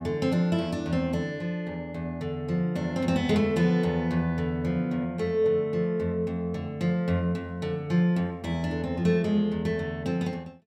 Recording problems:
none

